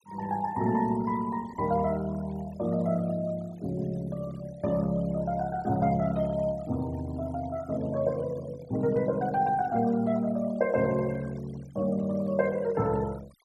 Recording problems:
noise reduction artefacts; signal-to-artefact ratio 21 dB

